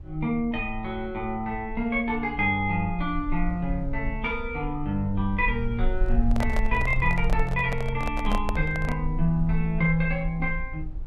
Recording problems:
rumble; below 48 Hz, SNR 7 dB
microphone handling noise; from 6 to 9 s; peak -1 dB vs average level

